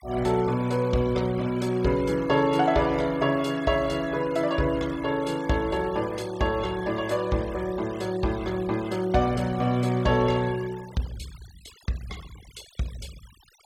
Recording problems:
noise reduction artefacts; signal-to-artefact ratio 20 dB

